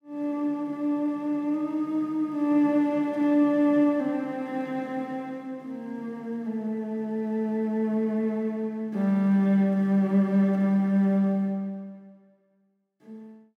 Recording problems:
none

